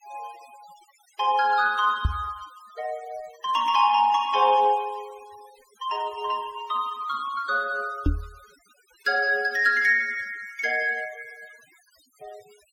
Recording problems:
noise reduction artefacts; signal-to-artefact ratio 24 dB
microphone thump; at 2 s and at 8 s; peak +3 dB vs average level

